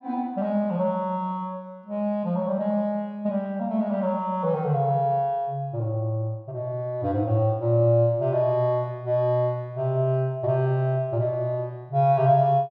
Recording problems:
none

